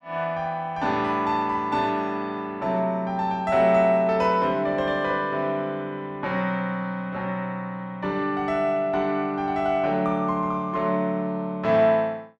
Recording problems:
none

